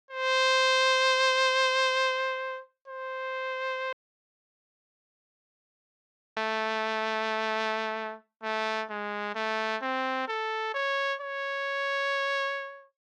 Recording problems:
dropout; at 4 s for 2.5 s

